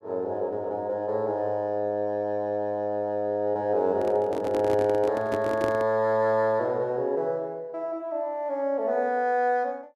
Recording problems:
microphone handling noise; from 4 to 6 s; peak -2 dB vs average level

